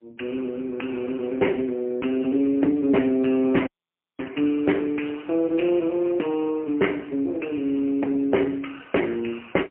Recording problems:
phone line; 220 Hz to 3 kHz, AMR-NB, then MP3
audio cutting out; at 3.5 s for 0.5 s

